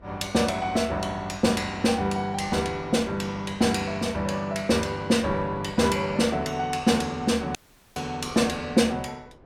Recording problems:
wind noise; below 630 Hz, SNR 22 dB
audio cutting out; at 7.5 s

